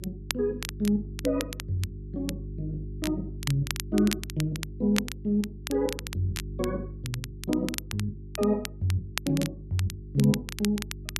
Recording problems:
hum; 50 Hz, harmonics up to 400 Hz, SNR 11 dB
crackling; vinyl, SNR 8 dB

